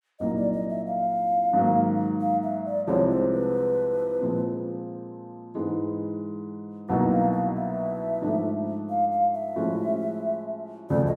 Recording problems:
none

